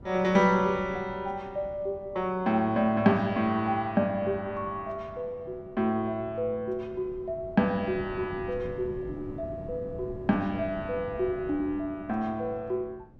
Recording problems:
wind on the microphone; below 280 Hz, SNR 17 dB

